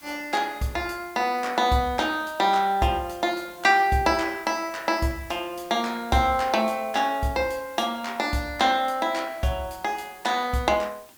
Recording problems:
background hiss; slope -2 dB per octave, SNR 23 dB

